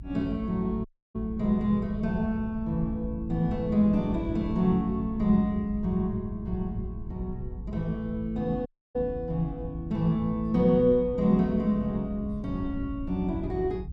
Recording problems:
low-frequency rumble; below 100 Hz, SNR 12 dB
audio cutting out; at 1 s and at 8.5 s

